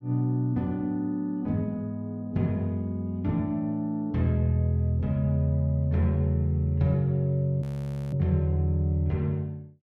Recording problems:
frozen audio; at 7.5 s

